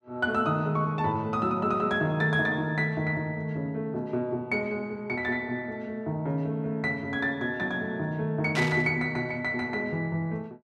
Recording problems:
burst of static; at 8.5 s; peak -1 dB vs average level

